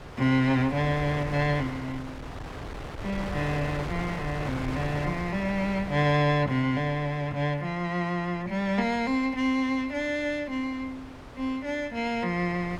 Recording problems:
wind on the microphone; below 1.1 kHz, SNR 12 dB

